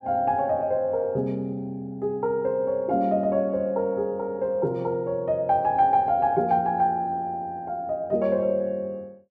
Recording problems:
none

